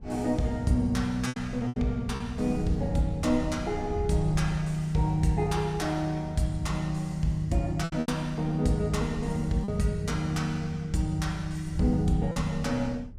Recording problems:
wind on the microphone; below 96 Hz, SNR 13 dB
lost packets; 3% of the sound replaced, filled with repeated pitch periods

